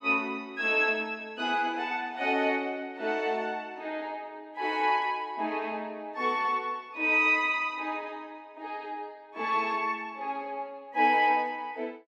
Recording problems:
none

